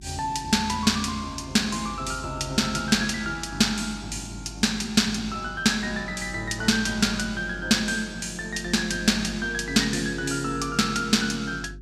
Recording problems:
electrical hum; 50 Hz, harmonics up to 400 Hz, SNR 18 dB

